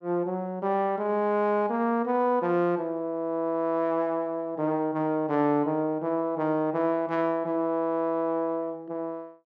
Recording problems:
none

